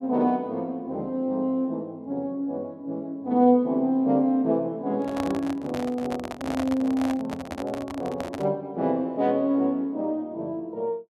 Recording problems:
microphone handling noise; from 5 to 8.5 s; peak -2 dB vs average level

